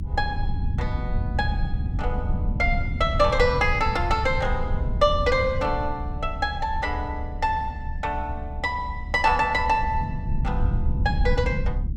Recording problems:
rumble; below 100 Hz, SNR 4 dB

